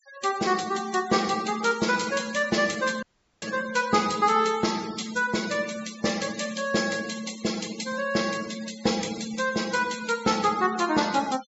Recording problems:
treble missing; nothing above 8 kHz
denoising artefacts; signal-to-artefact ratio 15 dB
audio cutting out; at 3 s

